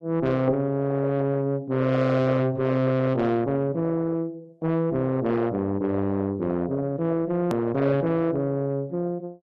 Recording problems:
lossy codec; AAC, then AAC, log-spectral distance 2 dB, nothing above 13.1 kHz
distortion; soft clipping, signal-to-distortion ratio 7 dB
edit click; at 7.5 s

